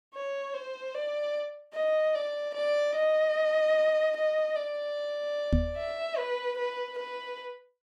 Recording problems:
microphone thump; at 5.5 s; peak +7 dB vs average level

